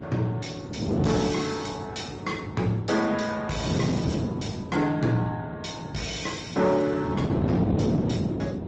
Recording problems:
codec artefacts; Speex, then Opus, log-spectral distance 5 dB
distortion; soft clipping, signal-to-distortion ratio 11 dB
hum; 50 Hz, harmonics up to 850 Hz, SNR 21 dB
wind on the microphone; below 360 Hz, SNR 1 dB

